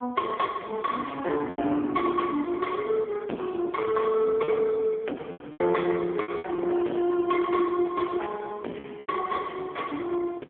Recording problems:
phone line; 220 Hz to 3.4 kHz, AMR-NB
distortion; soft clipping, signal-to-distortion ratio 8 dB
packet loss; 5% of the sound replaced, filled with repeated pitch periods

